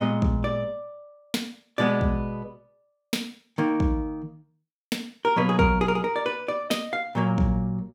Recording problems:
none

